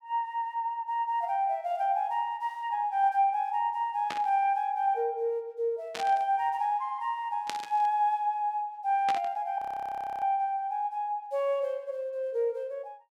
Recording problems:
burst of static; 4 times, first at 4 s; peak -1 dB vs average level
frozen audio; at 9.5 s for 0.5 s

